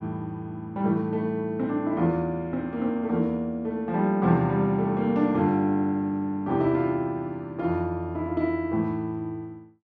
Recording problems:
none

